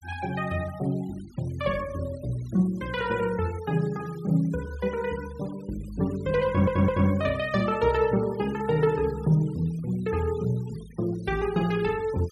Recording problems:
denoising artefacts; signal-to-artefact ratio 22 dB
stutter; at 6.5 s

